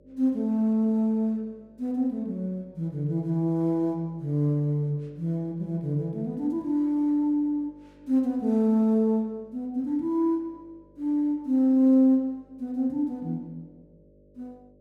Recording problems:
electrical hum; 50 Hz, harmonics up to 600 Hz, SNR 31 dB

